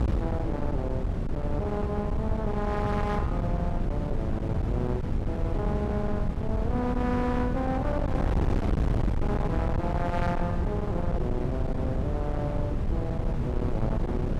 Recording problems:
distortion; hard clipping, signal-to-distortion ratio 7 dB
wind noise; below 190 Hz, SNR -2 dB

